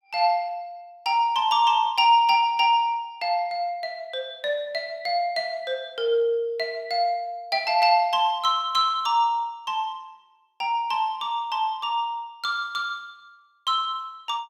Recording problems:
none

